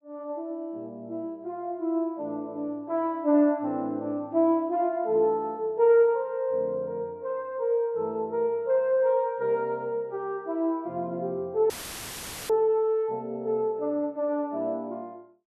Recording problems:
dropout; at 12 s for 1 s; filled with static

